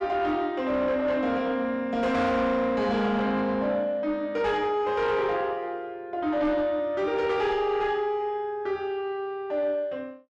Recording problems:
distorted audio; soft clipping, signal-to-distortion ratio 11 dB

